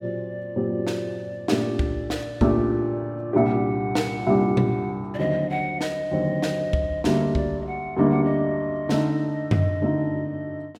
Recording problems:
none

